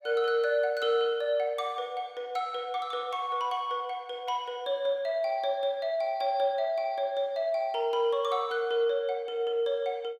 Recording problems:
none

